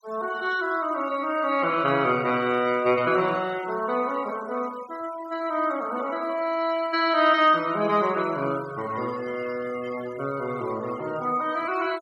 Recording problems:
denoising artefacts; signal-to-artefact ratio 19 dB

